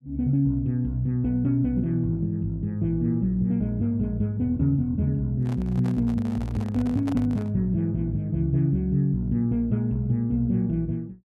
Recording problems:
handling noise; from 5.5 to 7.5 s; peak -8 dB vs average level

